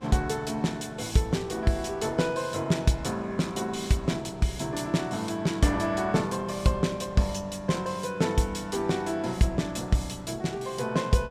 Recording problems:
wind on the microphone; below 780 Hz, SNR 25 dB

